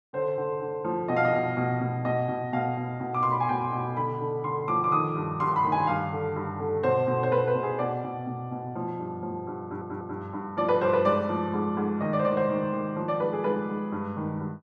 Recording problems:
stutter; at 9.5 s

